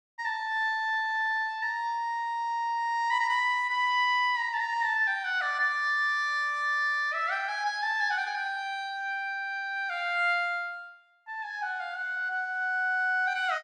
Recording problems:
none

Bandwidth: 12 kHz